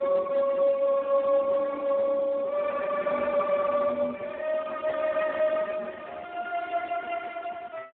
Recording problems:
phone line; 260 Hz to 2.2 kHz, Speex

